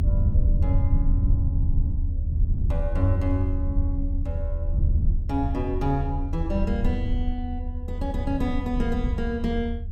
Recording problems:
low-frequency rumble; below 80 Hz, strongest tone 30 Hz, SNR -3 dB

